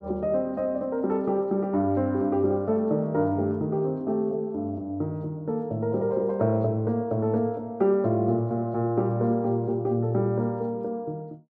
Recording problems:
none

